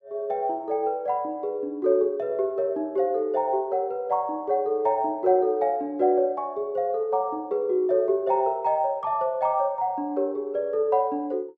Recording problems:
none

